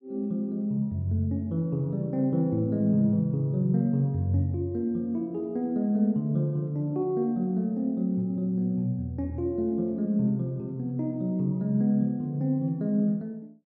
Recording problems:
none

